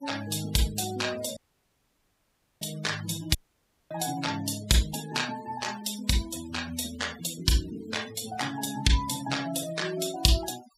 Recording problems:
denoising artefacts; signal-to-artefact ratio 14 dB
dropout; at 1.5 s for 1 s and at 3.5 s for 0.5 s

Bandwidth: 15.5 kHz